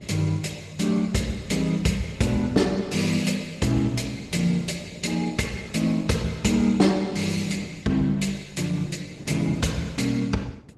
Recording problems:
lossy codec; Opus, log-spectral distance 4 dB, nothing above 13.5 kHz
wind on the microphone; below 290 Hz, SNR 17 dB

